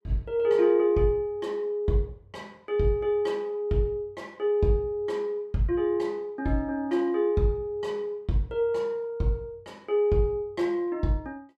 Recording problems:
none

